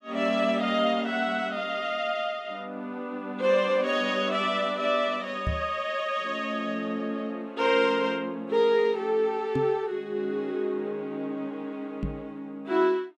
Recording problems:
microphone bump; at 5.5 s, at 9.5 s and at 12 s; peak +1 dB vs average level

